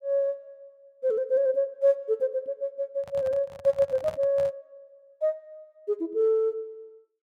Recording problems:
microphone handling noise; from 3 to 4.5 s; peak -8 dB vs average level

